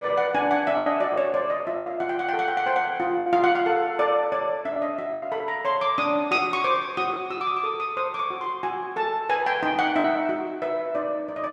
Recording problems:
packet loss; 4% of the sound replaced, filled with the last packet

